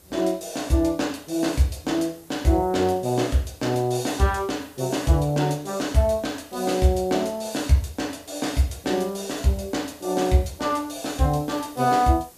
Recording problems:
background hiss; SNR 24 dB

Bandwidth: 14.5 kHz